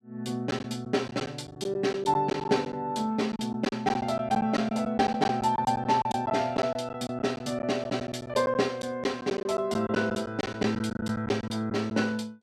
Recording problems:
packet loss; 10% of the sound replaced, filled with silence

